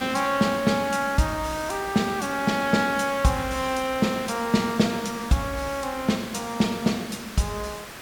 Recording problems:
background hiss; slope -3 dB per octave, SNR 12 dB

